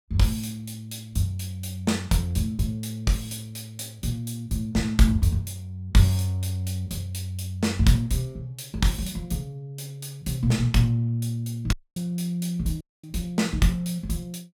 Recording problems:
audio cutting out; at 12 s and at 13 s

